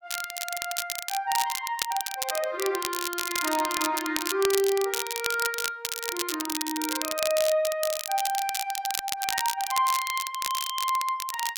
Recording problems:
crackle; vinyl, SNR 2 dB

